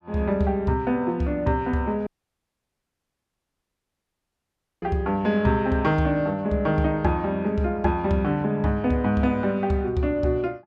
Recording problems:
dropout; at 2 s for 3 s

